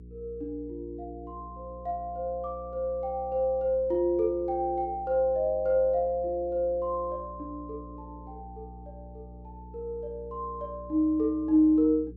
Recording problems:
hum; 60 Hz, harmonics up to 480 Hz, SNR 18 dB

